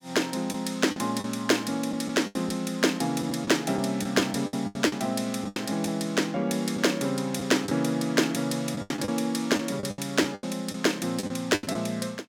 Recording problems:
lost packets; 10% of the sound replaced, filled with the last packet

